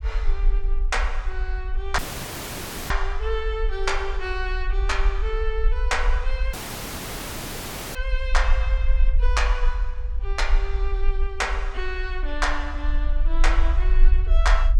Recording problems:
rumble; below 46 Hz, strongest tone 24 Hz, SNR -3 dB
audio cutting out; at 2 s for 1 s and at 6.5 s for 1.5 s

